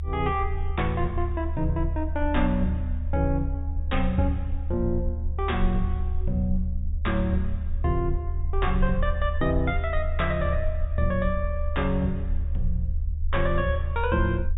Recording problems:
low-pass filter; nothing above 4 kHz
low-frequency rumble; below 76 Hz, SNR 1 dB

